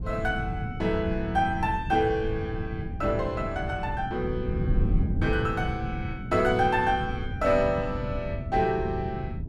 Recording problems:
wind on the microphone; below 160 Hz, SNR 5 dB

